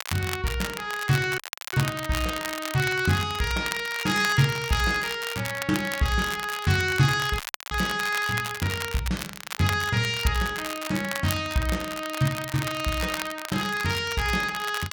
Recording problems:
crackle; vinyl, SNR 9 dB
audio cutting out; at 1.5 s and at 7.5 s

